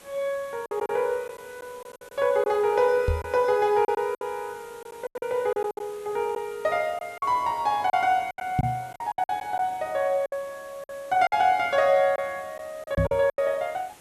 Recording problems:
background hiss; slope -3 dB per octave, SNR 24 dB
packet loss; 10% of the sound replaced, filled with silence
microphone bump; at 3 s, at 8.5 s and at 13 s; peak +5 dB vs average level

